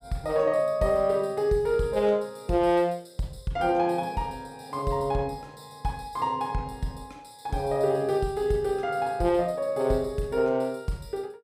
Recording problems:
none

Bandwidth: 15.5 kHz